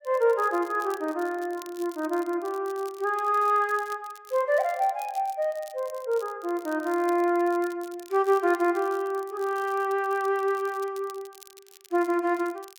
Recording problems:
crackle; vinyl, SNR 23 dB

